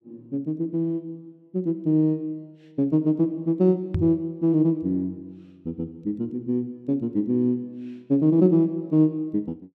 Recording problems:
microphone thump; at 4 s; peak +3 dB vs average level

